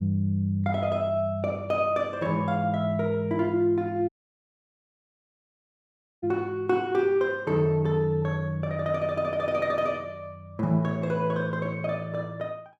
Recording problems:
audio cutting out; at 4 s for 2 s

